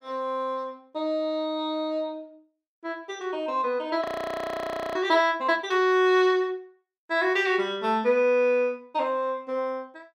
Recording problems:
audio freezing; at 4 s for 1 s

